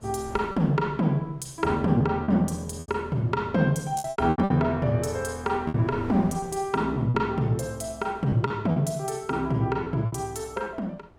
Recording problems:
wind on the microphone; below 610 Hz, SNR 23 dB
lost packets; 7% of the sound replaced, filled with repeated pitch periods

